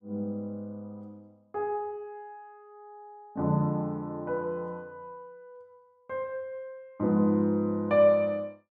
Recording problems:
none

